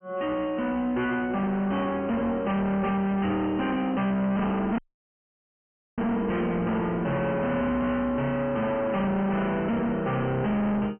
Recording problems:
low-pass filter; nothing above 3.1 kHz
distorted audio; hard clipping, uneven, signal-to-distortion ratio 5 dB
audio cutting out; at 5 s for 1 s

